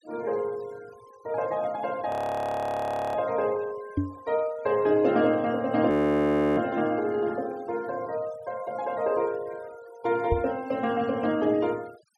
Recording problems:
denoising artefacts; signal-to-artefact ratio 24 dB
audio freezing; at 2 s for 1 s and at 6 s for 0.5 s
microphone thump; at 4 s and at 10 s; peak +4 dB vs average level

